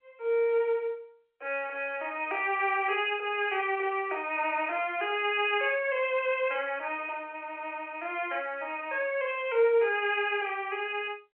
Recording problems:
phone line; 340 Hz to 3.1 kHz, G.711

